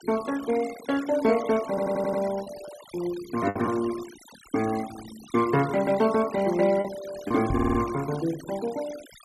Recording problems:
noise reduction artefacts; signal-to-artefact ratio 16 dB
packet loss; 2% of the sound replaced, filled with the last packet
stutter; at 1.5 s and at 7.5 s
knock on the microphone; at 7.5 s; peak 0 dB vs average level

